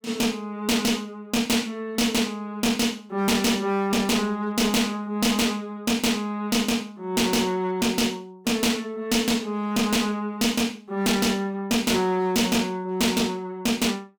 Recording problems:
distorted audio; hard clipping, uneven, signal-to-distortion ratio 6 dB

